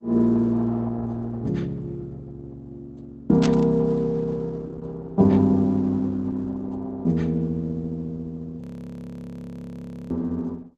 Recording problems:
lossy codec; Opus, log-spectral distance 2 dB, nothing above 13.1 kHz
static burst; at 3.5 s; peak -3 dB vs average level
audio freezing; at 8.5 s for 1.5 s

